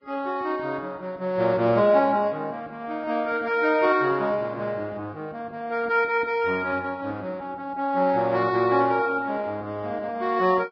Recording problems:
lossy compression; Vorbis, log-spectral distance 2 dB, nothing above 5.2 kHz

